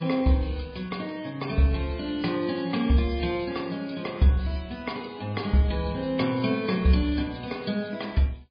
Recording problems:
lossy compression; MP3, log-spectral distance 4 dB, nothing above 4.8 kHz

